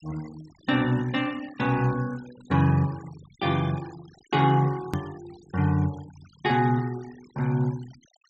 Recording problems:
treble missing; nothing above 8 kHz
noise reduction artefacts; signal-to-artefact ratio 22 dB
edit click; at 5 s

